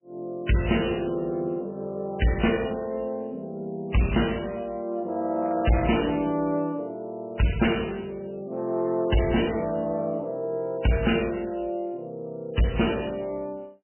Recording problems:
lossy codec; MP3, log-spectral distance 5 dB, nothing above 3 kHz
distortion; hard clipping, uneven, signal-to-distortion ratio 10 dB

